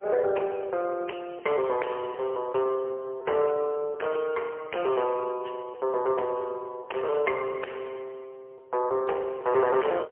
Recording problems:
phone line; 340 Hz to 3.1 kHz, AMR-NB, then MP3
distorted audio; hard clipping, signal-to-distortion ratio 13 dB

